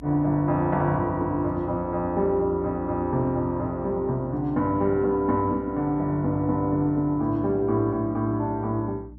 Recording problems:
hum; 60 Hz, harmonics up to 300 Hz, SNR 19 dB

